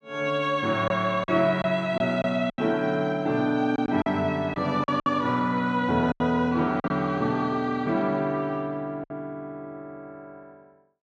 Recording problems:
lost packets; 6% of the sound replaced, filled with silence

